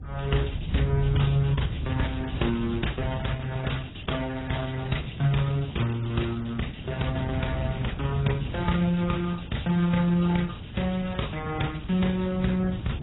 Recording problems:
codec artefacts; Opus, then AAC, log-spectral distance 4 dB, nothing above 3.8 kHz
rumble; below 120 Hz, SNR 4 dB

